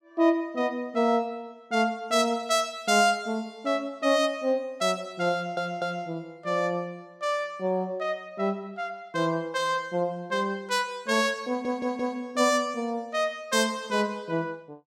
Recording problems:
audio stuttering; at 5.5 s and at 11 s

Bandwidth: 16.5 kHz